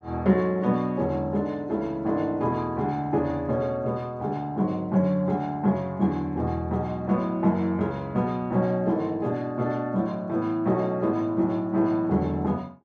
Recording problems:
none

